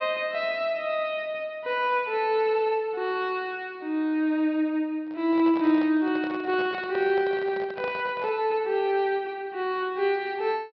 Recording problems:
low-pass filter; nothing above 5.5 kHz
handling noise; from 5 to 8.5 s; peak -7 dB vs average level

